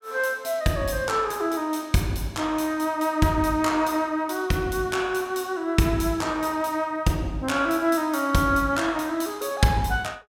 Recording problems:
none

